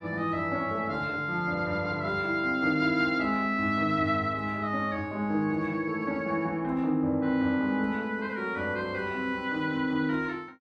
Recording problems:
none

